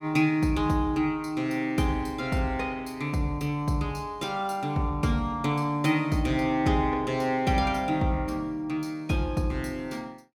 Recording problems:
none

